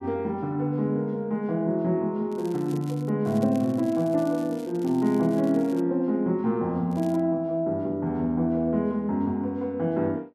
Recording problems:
crackle; at 2.5 s, from 3.5 to 6 s and at 7 s; loose cable, SNR 25 dB

